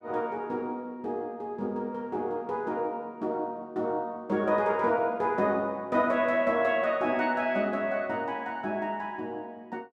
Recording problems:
none

